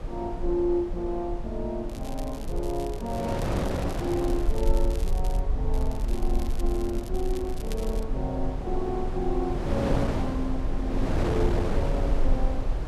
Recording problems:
rumble; below 44 Hz, strongest tone 20 Hz, SNR 2 dB
wind noise; below 590 Hz, SNR 2 dB
crackling; from 2 to 5.5 s and from 5.5 to 8 s; loose cable, SNR 15 dB

